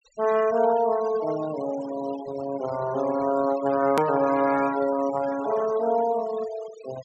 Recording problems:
treble missing; nothing above 8 kHz
denoising artefacts; signal-to-artefact ratio 16 dB
hard cut with a click; at 4 s

